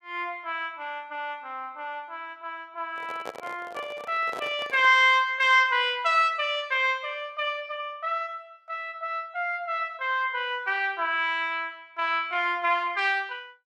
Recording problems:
handling noise; from 3 to 5 s; peak -6 dB vs average level

